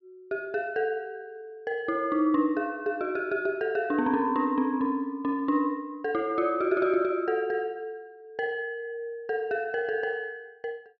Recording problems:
none

